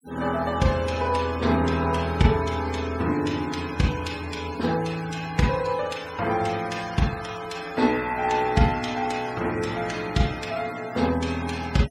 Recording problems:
denoising artefacts; signal-to-artefact ratio 16 dB

